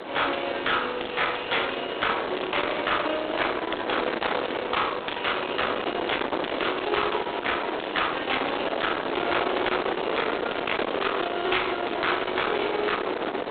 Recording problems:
telephone audio; 280 Hz to 3.9 kHz, G.726
distorted audio; soft clipping, signal-to-distortion ratio 10 dB
wind on the microphone; below 1.7 kHz, SNR 4 dB

